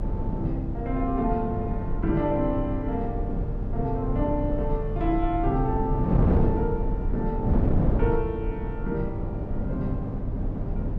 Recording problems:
electrical hum; 50 Hz, harmonics up to 800 Hz, SNR 11 dB
low-frequency rumble; below 40 Hz, strongest tone 36 Hz, SNR 6 dB
wind on the microphone; below 240 Hz, SNR 1 dB

